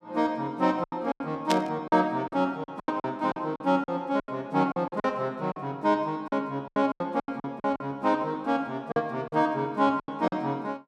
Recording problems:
packet loss; 13% of the sound replaced, filled with silence
burst of static; at 1.5 s; peak +3 dB vs average level

